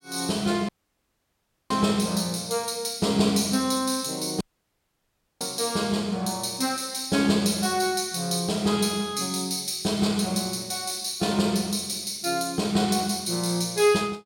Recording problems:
dropout; at 0.5 s for 1 s and at 4.5 s for 1 s

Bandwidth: 16.5 kHz